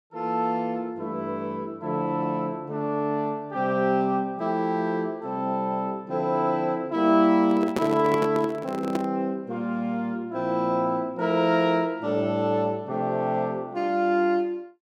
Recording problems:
handling noise; from 7.5 to 9 s; peak +2 dB vs average level

